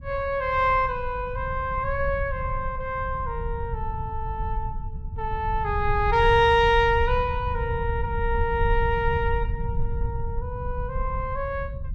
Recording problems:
rumble; below 86 Hz, SNR 7 dB

